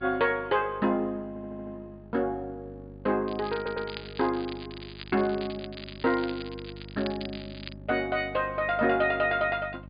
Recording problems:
low-pass filter; nothing above 4.9 kHz
electrical hum; 50 Hz, harmonics up to 850 Hz, SNR 17 dB
audio stuttering; at 1.5 s and at 3.5 s
crackling; from 3.5 to 7.5 s; loose cable, SNR 15 dB

